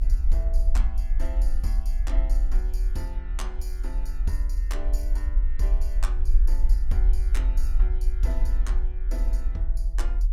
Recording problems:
low-frequency rumble; below 44 Hz, SNR -13 dB

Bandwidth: 17.5 kHz